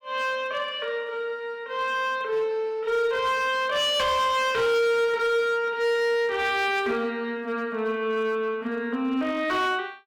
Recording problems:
distorted audio; hard clipping, signal-to-distortion ratio 12 dB

